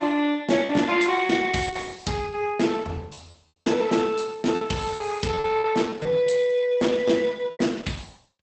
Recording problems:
codec artefacts; Opus, log-spectral distance 5 dB, nothing above 8.2 kHz
lost packets; 7% of the sound replaced, filled with repeated pitch periods

